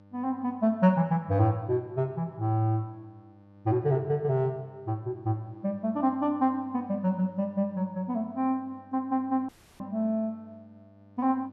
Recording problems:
electrical hum; 50 Hz, harmonics up to 1.5 kHz, SNR 25 dB
audio cutting out; at 9.5 s

